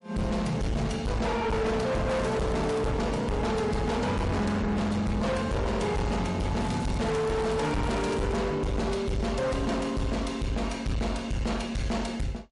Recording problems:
codec artefacts; MP3, log-spectral distance 2 dB, nothing above 11 kHz
distortion; hard clipping, uneven, signal-to-distortion ratio 6 dB
crackle; at 2 s and from 6.5 to 8.5 s; loose cable, SNR 19 dB

